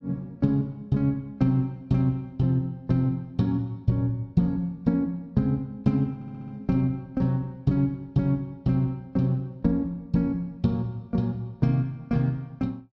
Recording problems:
audio stuttering; at 6 s

